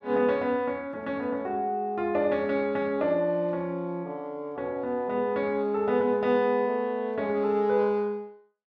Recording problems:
none

